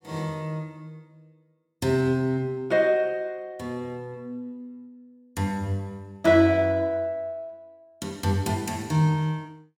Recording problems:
none

